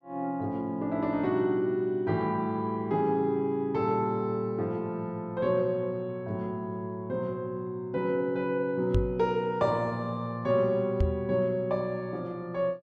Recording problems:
knock on the microphone; at 9 s and at 11 s; peak +6 dB vs average level

